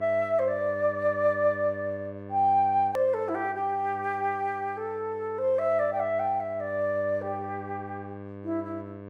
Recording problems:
hum; 50 Hz, harmonics up to 1.7 kHz, SNR 15 dB
hard cut with a click; at 3 s

